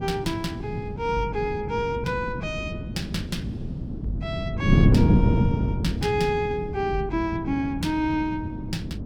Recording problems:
wind on the microphone; below 240 Hz, SNR -1 dB

